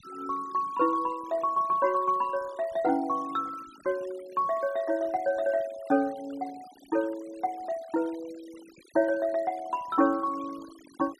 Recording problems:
denoising artefacts; signal-to-artefact ratio 22 dB

